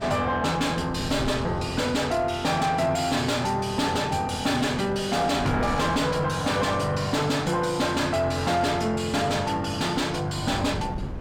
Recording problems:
distorted audio; soft clipping, signal-to-distortion ratio 8 dB
wind noise; below 340 Hz, SNR 13 dB

